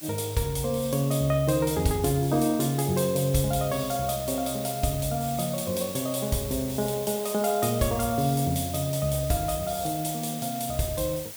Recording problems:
hiss; SNR 12 dB

